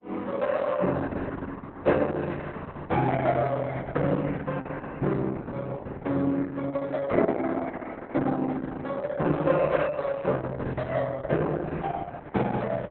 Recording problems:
lossy codec; Opus, log-spectral distance 3 dB, nothing above 3.9 kHz

